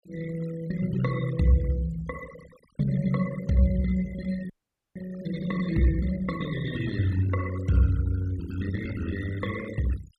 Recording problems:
noise reduction artefacts; signal-to-artefact ratio 16 dB
frozen audio; at 4.5 s

